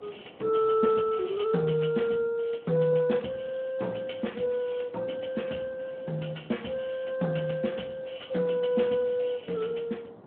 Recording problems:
telephone audio; 190 Hz to 3.5 kHz, Speex
wind on the microphone; below 690 Hz, SNR 24 dB

